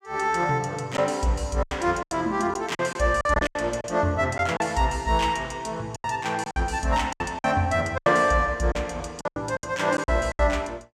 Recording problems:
packet loss; 11% of the sound replaced, filled with silence

